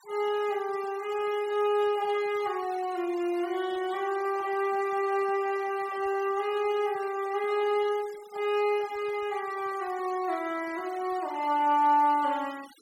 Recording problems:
denoising artefacts; signal-to-artefact ratio 20 dB

